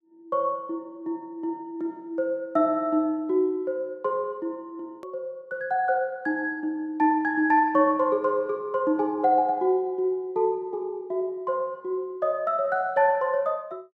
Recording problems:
edit click; at 5 s

